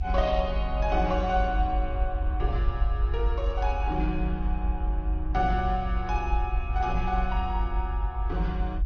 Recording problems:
treble cut off; nothing above 6.2 kHz
lossy codec; Opus, then Vorbis, log-spectral distance 2 dB
rumble; below 56 Hz, strongest tone 46 Hz, SNR 0 dB

